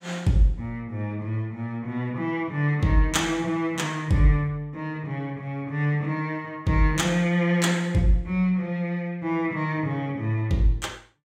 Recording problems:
none

